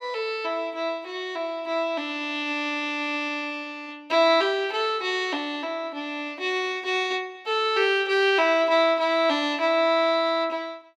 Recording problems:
none

